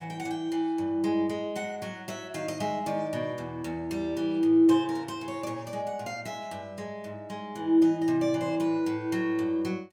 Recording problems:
none

